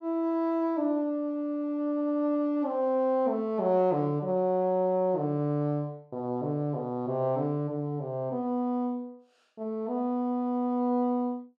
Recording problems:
none

